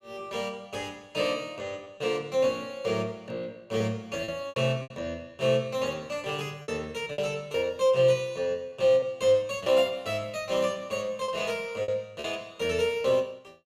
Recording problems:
packet loss; 5% of the sound replaced, filled with repeated pitch periods

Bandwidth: 14 kHz